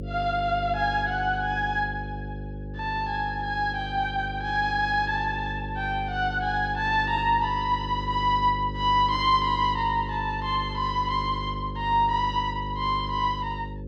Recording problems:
hum; 50 Hz, harmonics up to 550 Hz, SNR 9 dB

